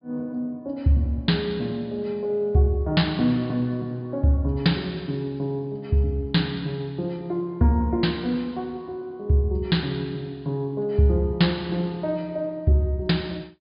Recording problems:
low-pass filter; nothing above 5 kHz

